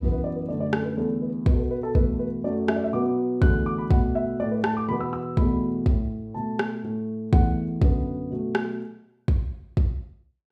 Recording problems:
none

